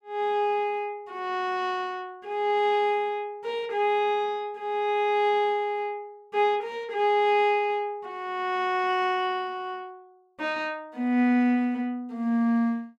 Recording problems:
none

